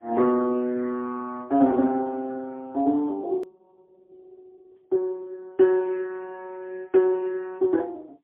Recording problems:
phone line; 220 Hz to 2.3 kHz, AMR-NB, then MP3
edit click; at 3.5 s

